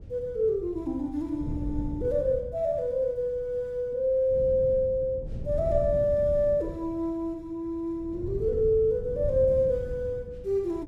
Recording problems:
wind on the microphone; below 140 Hz, SNR 11 dB

